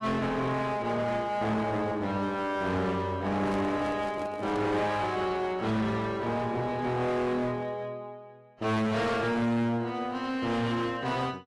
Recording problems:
lossy compression; AAC, log-spectral distance 2 dB, nothing above 11.3 kHz
distortion; hard clipping, uneven, signal-to-distortion ratio 6 dB
handling noise; from 3.5 to 5 s; peak -4 dB vs average level

